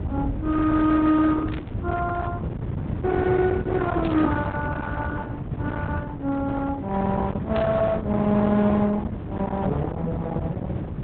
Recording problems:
treble cut off; nothing above 4 kHz
codec artefacts; Opus, log-spectral distance 2 dB
distortion; hard clipping, uneven, signal-to-distortion ratio 10 dB
low-frequency rumble; below 280 Hz, SNR 4 dB
burst of static; at 1.5 s, at 4 s and at 7.5 s; peak -10 dB vs average level

